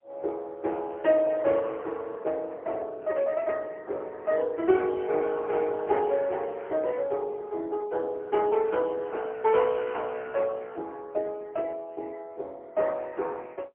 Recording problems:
telephone audio; 320 Hz to 3.1 kHz, AMR-NB, then MP3

